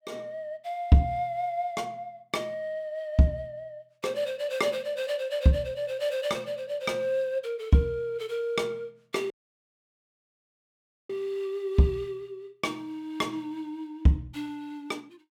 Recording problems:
dropout; at 9.5 s for 2 s

